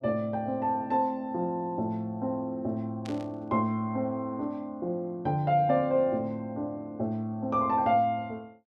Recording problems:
burst of static; at 3 s; peak -11 dB vs average level

